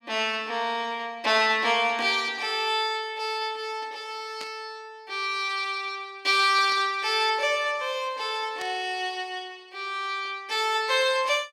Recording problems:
burst of static; 4 times, first at 2 s; peak -10 dB vs average level

